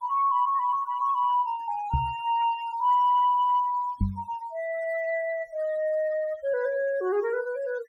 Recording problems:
denoising artefacts; signal-to-artefact ratio 22 dB
microphone bump; at 2 s and at 4 s; peak +3 dB vs average level

